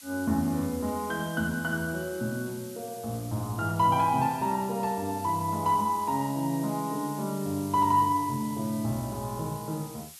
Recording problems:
hiss; slope +4 dB per octave, SNR 16 dB

